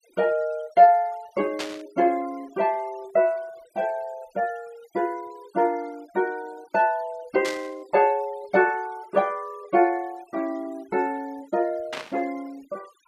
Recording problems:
noise reduction artefacts; signal-to-artefact ratio 25 dB
static burst; at 1.5 s, at 7.5 s and at 12 s; peak -2 dB vs average level

